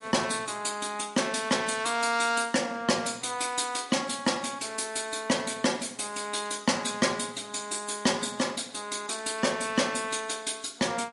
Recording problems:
lossy compression; MP3, log-spectral distance 7 dB, nothing above 10.7 kHz

